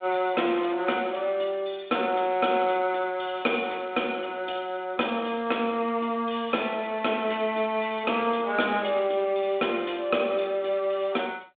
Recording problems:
telephone audio; 240 Hz to 3.7 kHz, G.726

